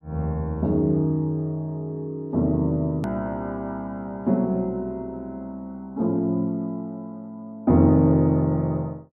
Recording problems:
click at an edit; at 3 s

